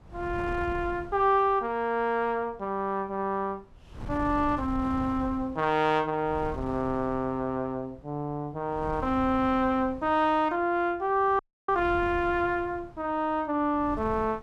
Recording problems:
wind on the microphone; below 210 Hz, SNR 14 dB
frozen audio; at 11 s

